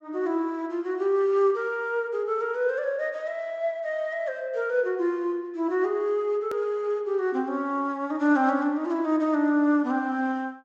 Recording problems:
treble missing; nothing above 8 kHz
click at an edit; at 6.5 s

